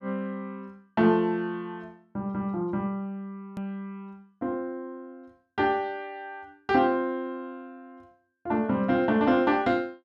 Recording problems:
edit click; at 3.5 s

